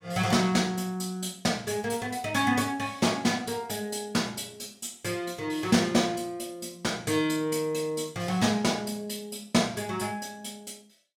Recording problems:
none

